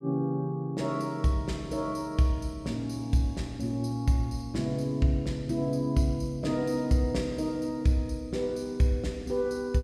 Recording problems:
none

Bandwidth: 15 kHz